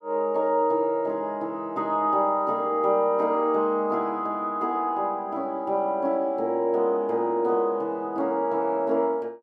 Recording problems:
none

